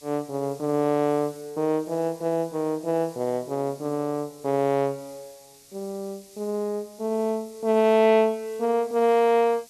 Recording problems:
hiss; SNR 24 dB

